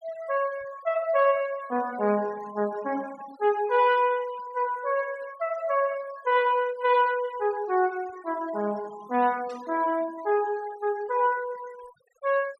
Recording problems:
denoising artefacts; signal-to-artefact ratio 21 dB
static burst; at 9.5 s; peak -20 dB vs average level

